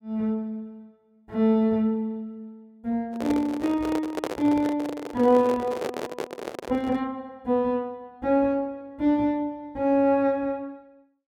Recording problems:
microphone handling noise; from 3 to 7 s; peak 0 dB vs average level

